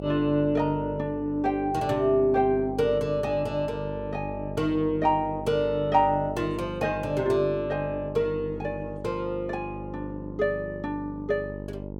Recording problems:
hum; 50 Hz, harmonics up to 950 Hz, SNR 11 dB

